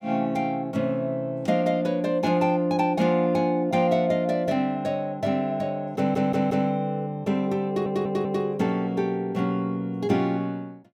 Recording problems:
audio stuttering; at 6 s and at 7.5 s

